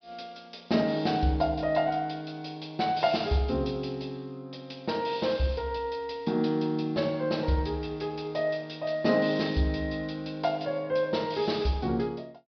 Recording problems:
treble missing; nothing above 5.5 kHz

